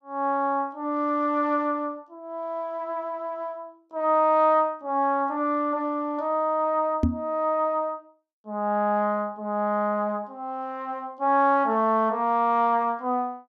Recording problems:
knock on the microphone; at 7 s; peak +6 dB vs average level

